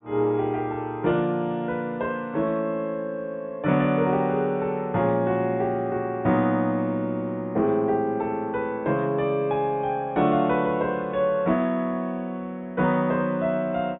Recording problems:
low-pass filter; nothing above 4 kHz

